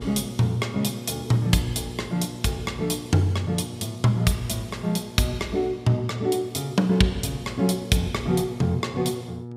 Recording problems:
hum; 60 Hz, harmonics up to 960 Hz, SNR 13 dB

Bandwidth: 15.5 kHz